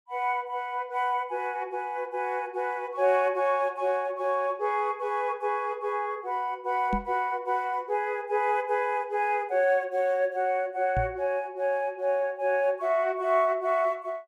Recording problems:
microphone bump; at 7 s and at 11 s; peak 0 dB vs average level

